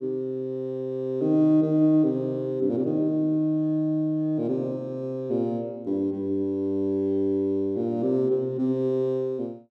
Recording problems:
none

